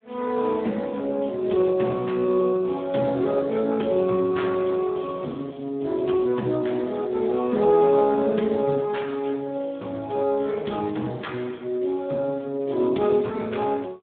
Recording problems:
telephone audio; 130 Hz to 3.8 kHz, Speex

